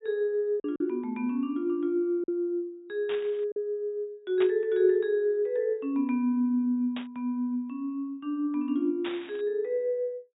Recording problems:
treble missing; nothing above 4 kHz
lost packets; 1.6% of the sound replaced, filled with silence
static burst; 4 times, first at 3 s; peak -5 dB vs average level

